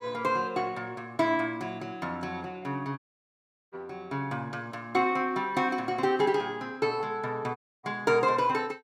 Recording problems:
dropout; at 3 s for 0.5 s and at 7.5 s

